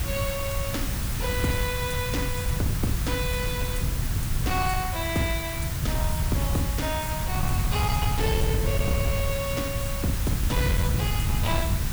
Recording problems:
distortion; hard clipping, signal-to-distortion ratio 12 dB
electrical hum; 50 Hz, harmonics up to 300 Hz, SNR 12 dB
hiss; slope -1 dB per octave, SNR 4 dB
rumble; below 130 Hz, SNR 0 dB
wind noise; below 150 Hz, SNR 8 dB

